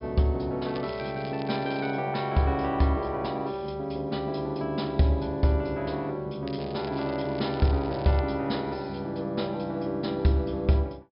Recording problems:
treble missing; nothing above 5.5 kHz
crackle; from 0.5 to 2 s and from 6.5 to 8 s; loose cable, SNR 19 dB

